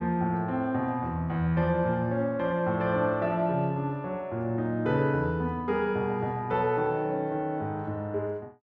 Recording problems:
none

